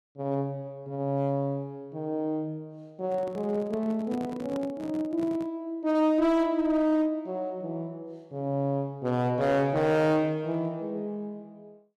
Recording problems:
distortion; hard clipping, uneven, signal-to-distortion ratio 12 dB
microphone handling noise; from 3 to 5.5 s; peak -7 dB vs average level

